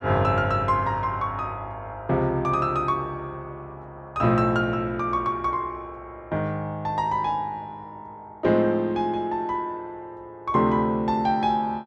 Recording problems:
none

